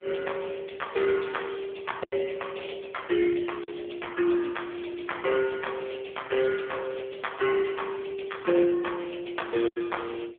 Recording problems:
telephone audio; 300 Hz to 3.4 kHz, AMR-NB
lost packets; 1.9% of the sound replaced, filled with silence

